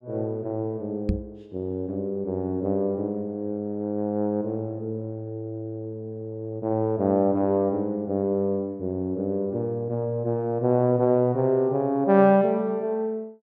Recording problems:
microphone bump; at 1 s; peak +4 dB vs average level

